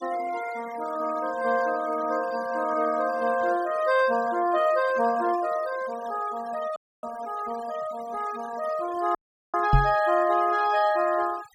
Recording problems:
denoising artefacts; signal-to-artefact ratio 18 dB
audio cutting out; at 7 s and at 9 s
knock on the microphone; at 9.5 s; peak +8 dB vs average level

